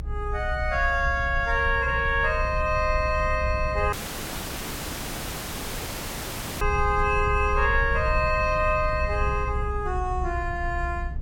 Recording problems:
rumble; below 76 Hz, SNR 6 dB
dropout; at 4 s for 2.5 s

